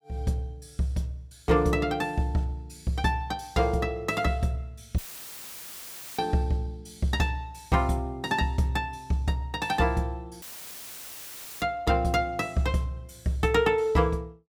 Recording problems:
audio cutting out; at 5 s for 1 s and at 10 s for 1 s; filled with static

